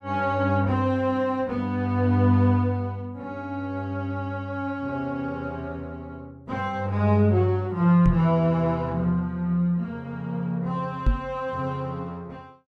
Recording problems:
microphone thump; at 8 s and at 11 s; peak +6 dB vs average level

